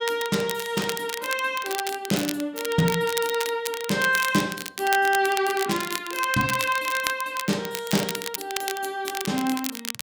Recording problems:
crackle; vinyl, SNR 7 dB

